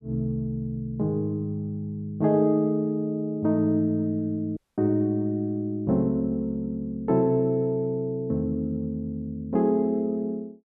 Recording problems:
audio cutting out; at 4.5 s

